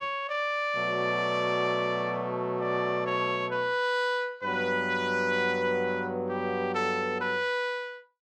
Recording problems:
none

